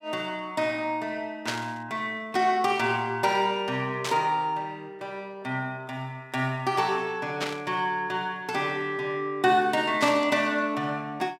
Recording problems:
burst of static; 4 times, first at 1.5 s; peak +1 dB vs average level

